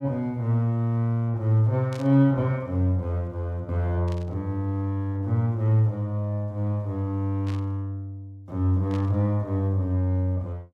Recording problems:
static burst; 4 times, first at 2 s; peak -14 dB vs average level

